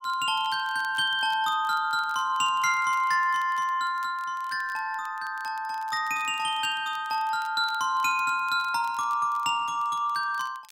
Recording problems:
crackling; vinyl, SNR 27 dB

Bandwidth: 16 kHz